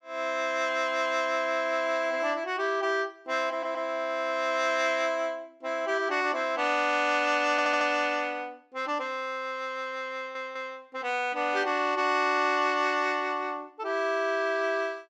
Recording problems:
stutter; at 3.5 s, at 7.5 s and at 10 s

